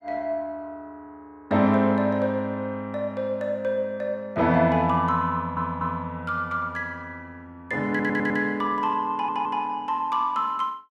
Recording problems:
stutter; at 5.5 s, at 8 s and at 9 s

